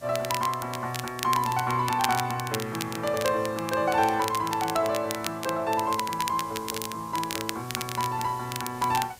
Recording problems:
hiss; SNR 21 dB
crackling; vinyl, SNR 8 dB

